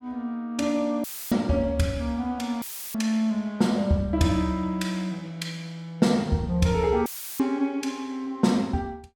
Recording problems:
audio cutting out; at 1 s, at 2.5 s and at 7 s; filled with static

